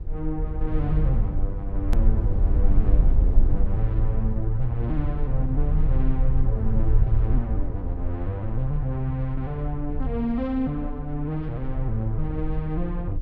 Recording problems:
rumble; below 56 Hz, SNR -2 dB
click at an edit; at 2 s

